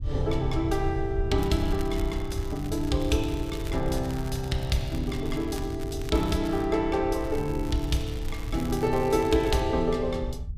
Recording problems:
rumble; below 84 Hz, SNR 7 dB
crackle; from 1.5 to 6.5 s and from 7 to 9.5 s; loose cable, SNR 19 dB

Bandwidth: 15 kHz